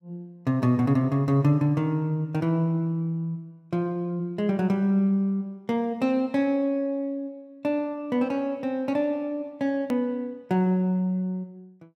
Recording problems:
edit click; at 10 s

